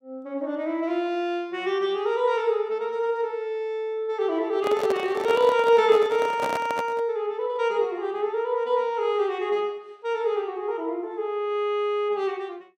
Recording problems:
handling noise; from 4.5 to 7 s; peak 0 dB vs average level

